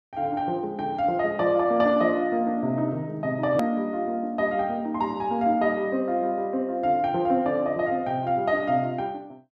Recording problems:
hard cut with a click; at 3.5 s

